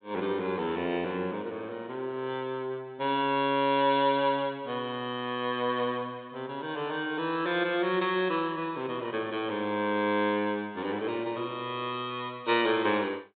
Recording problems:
treble missing; nothing above 4 kHz

